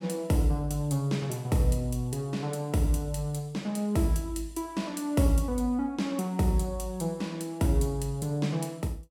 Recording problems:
none

